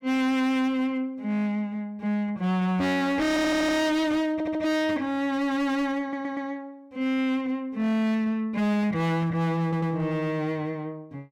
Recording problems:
distorted audio; hard clipping, signal-to-distortion ratio 7 dB
stutter; 4 times, first at 3.5 s

